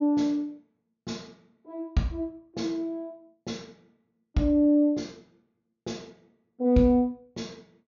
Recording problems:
treble cut off; nothing above 6.8 kHz

